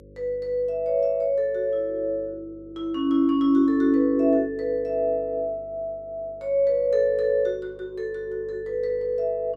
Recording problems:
hum; 50 Hz, harmonics up to 550 Hz, SNR 25 dB

